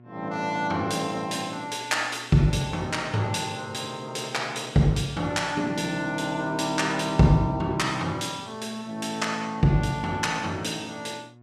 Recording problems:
electrical hum; 60 Hz, harmonics up to 1.4 kHz, SNR 24 dB

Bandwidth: 14.5 kHz